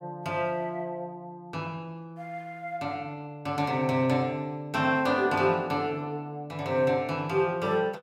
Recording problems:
none

